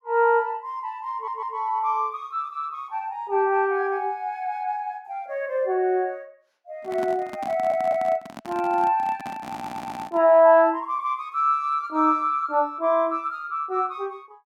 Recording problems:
stutter; at 1 s, at 7.5 s and at 9.5 s
handling noise; from 7 to 10 s; peak -9 dB vs average level

